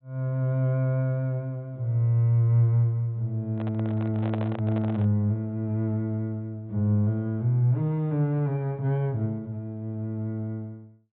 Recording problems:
treble missing; nothing above 4 kHz
handling noise; from 3.5 to 5 s; peak -5 dB vs average level

